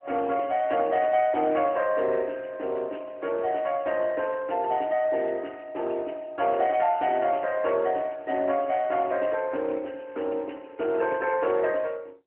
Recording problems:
phone line; 240 Hz to 3.1 kHz, AMR-NB

